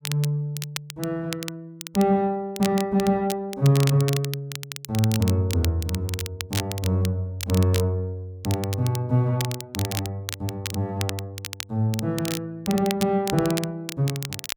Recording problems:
crackling; vinyl, SNR 10 dB

